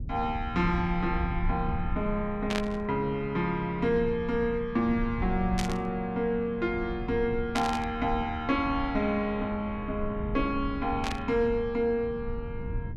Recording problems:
rumble; below 98 Hz, SNR 10 dB
burst of static; 4 times, first at 2.5 s; peak 0 dB vs average level

